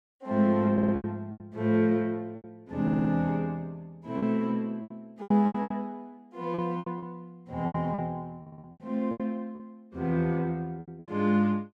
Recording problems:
lost packets; 12% of the sound replaced, filled with repeated pitch periods
stutter; at 0.5 s, at 3 s and at 8.5 s

